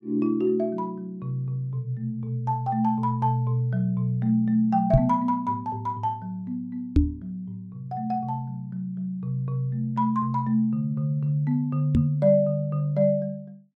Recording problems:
microphone thump; at 5 s, at 7 s and at 12 s; peak +9 dB vs average level

